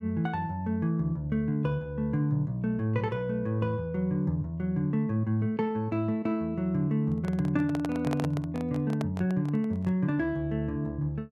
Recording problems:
microphone handling noise; from 7 to 10 s; peak -2 dB vs average level

